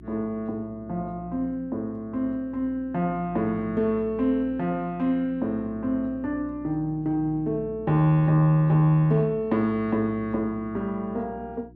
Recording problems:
mains hum; 60 Hz, harmonics up to 360 Hz, SNR 19 dB

